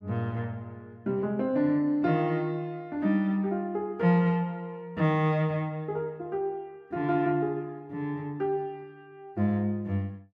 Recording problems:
none

